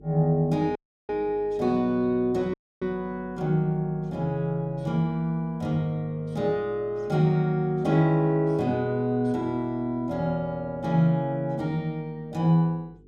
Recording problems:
hum; 50 Hz, harmonics up to 450 Hz, SNR 26 dB
audio cutting out; at 1 s and at 2.5 s

